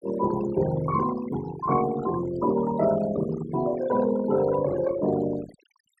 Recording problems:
noise reduction artefacts; signal-to-artefact ratio 12 dB

